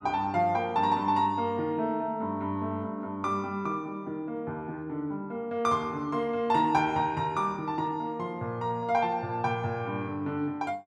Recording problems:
none

